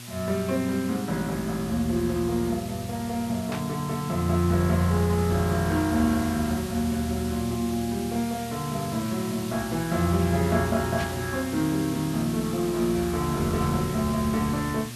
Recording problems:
electrical hum; 60 Hz, harmonics up to 600 Hz, SNR 14 dB
background hiss; slope +1 dB per octave, SNR 13 dB
burst of static; at 3.5 s and at 11 s; peak -6 dB vs average level

